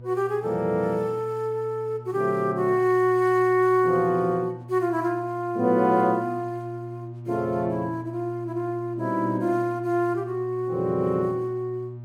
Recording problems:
hum; 60 Hz, harmonics up to 600 Hz, SNR 15 dB

